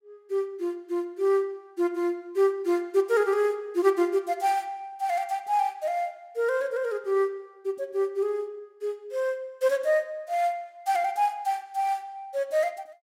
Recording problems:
none

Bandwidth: 16 kHz